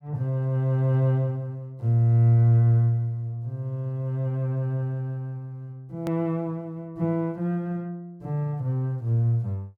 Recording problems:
hard cut with a click; at 6 s

